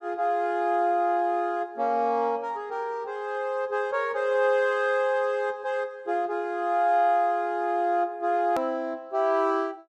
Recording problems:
hard cut with a click; at 8.5 s

